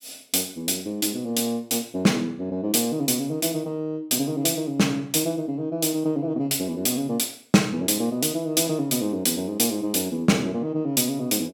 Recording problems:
none

